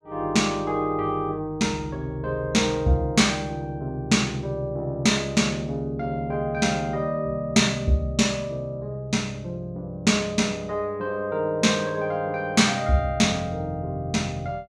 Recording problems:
none

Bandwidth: 15 kHz